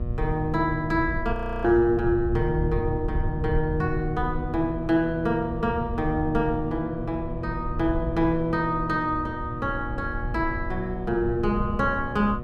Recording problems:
electrical hum; 60 Hz, harmonics up to 1.3 kHz, SNR 12 dB
low-frequency rumble; below 96 Hz, SNR 8 dB
audio freezing; at 1.5 s

